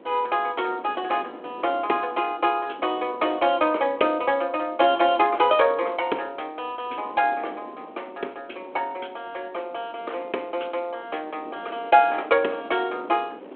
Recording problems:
telephone audio; 240 Hz to 3.4 kHz, G.726
wind noise; below 670 Hz, SNR 19 dB

